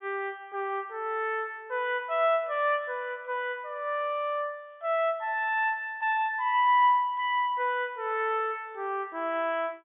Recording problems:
treble cut off; nothing above 3.5 kHz

